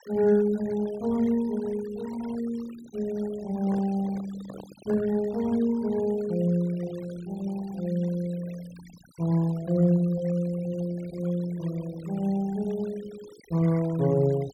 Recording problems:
noise reduction artefacts; signal-to-artefact ratio 20 dB
microphone handling noise; from 3.5 to 5 s; peak -9 dB vs average level

